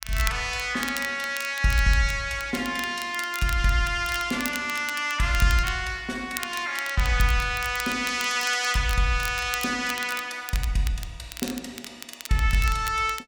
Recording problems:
crackle; vinyl, SNR 13 dB

